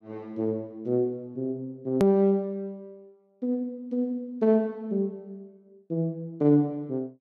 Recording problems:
edit click; at 2 s

